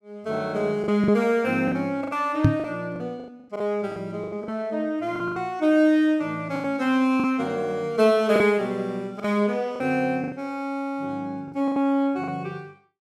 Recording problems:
packet loss; 9% of the sound replaced, filled with the last packet
microphone thump; at 2.5 s; peak +9 dB vs average level

